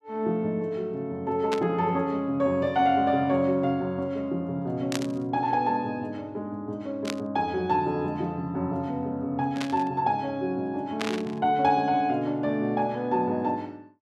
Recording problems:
static burst; 5 times, first at 1.5 s; peak 0 dB vs average level

